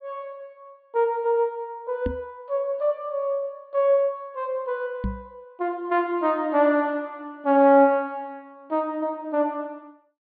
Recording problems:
treble cut off; nothing above 4.7 kHz
microphone bump; at 2 s and at 5 s; peak -1 dB vs average level

